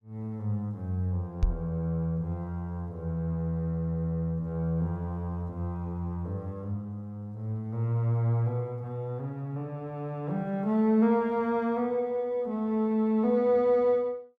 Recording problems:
knock on the microphone; at 1.5 s; peak +7 dB vs average level

